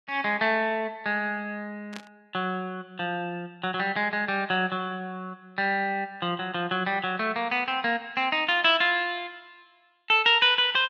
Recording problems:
static burst; at 2 s; peak -10 dB vs average level

